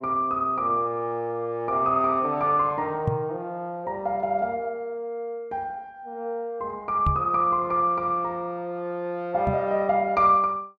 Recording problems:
knock on the microphone; at 3 s, at 7 s and at 9.5 s; peak +3 dB vs average level

